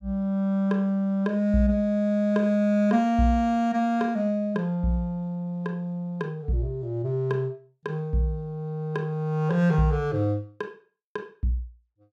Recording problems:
none

